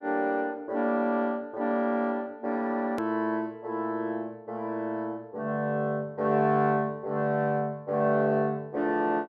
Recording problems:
edit click; at 3 s

